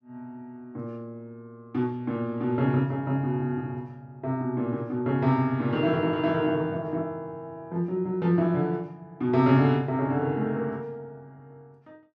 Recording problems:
none

